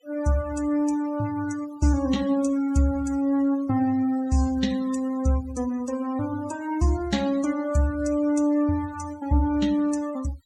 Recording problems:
denoising artefacts; signal-to-artefact ratio 20 dB

